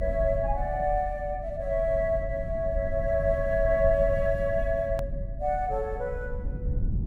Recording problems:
rumble; below 88 Hz, strongest tone 40 Hz, SNR 7 dB
click at an edit; at 5 s

